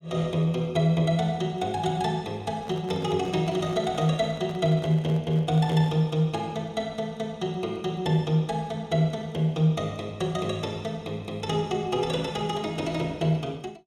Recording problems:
handling noise; from 2.5 to 6 s; peak -10 dB vs average level

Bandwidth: 16 kHz